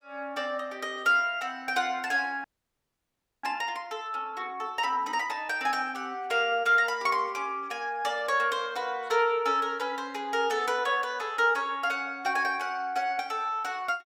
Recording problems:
audio freezing; at 2.5 s for 1 s

